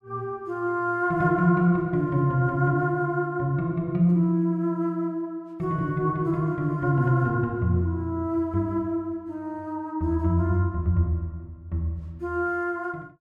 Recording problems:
none

